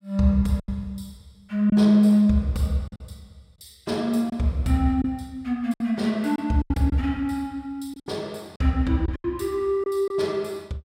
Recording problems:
packet loss; 6% of the sound replaced, filled with silence

